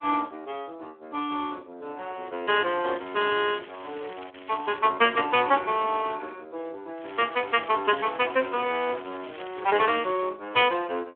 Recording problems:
telephone audio; 260 Hz to 3.4 kHz, Speex
crackling; from 3 to 5 s and from 7 to 10 s; loose cable, SNR 20 dB

